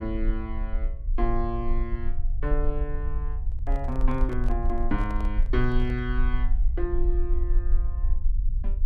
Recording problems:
low-frequency rumble; below 44 Hz, strongest tone 22 Hz, SNR -3 dB
microphone handling noise; from 3.5 to 6 s; peak -7 dB vs average level

